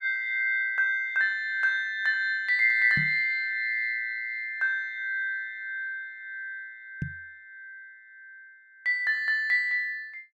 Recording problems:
microphone thump; at 3 s and at 7 s; peak -2 dB vs average level

